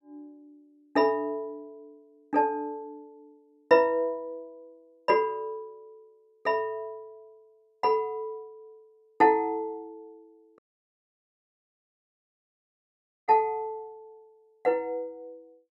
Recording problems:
dropout; at 11 s for 2.5 s

